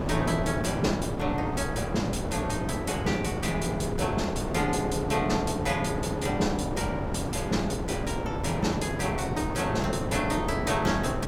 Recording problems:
wind on the microphone; below 530 Hz, SNR 2 dB

